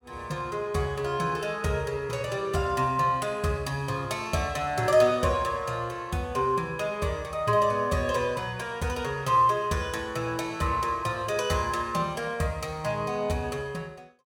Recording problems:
none

